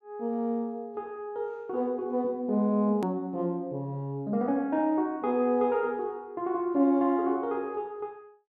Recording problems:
click at an edit; at 3 s

